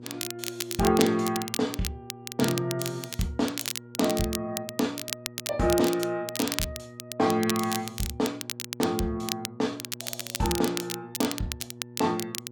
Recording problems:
hum; 60 Hz, harmonics up to 960 Hz, SNR 18 dB
crackling; vinyl, SNR 6 dB

